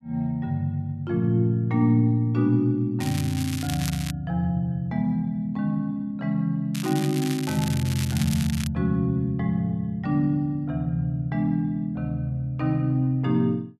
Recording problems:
crackling; from 3 to 4 s and from 6.5 to 8.5 s; loose cable, SNR 11 dB

